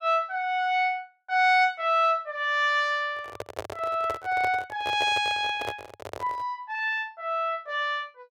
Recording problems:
microphone handling noise; from 3 to 6.5 s; peak -3 dB vs average level

